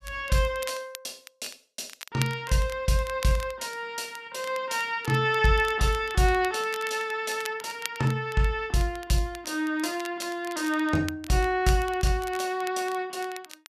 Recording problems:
crackling; vinyl, SNR 16 dB

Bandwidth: 13.5 kHz